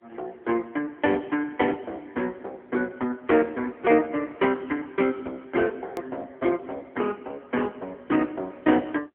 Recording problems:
phone line; 260 Hz to 3.5 kHz, AMR-NB
hard cut with a click; at 6 s

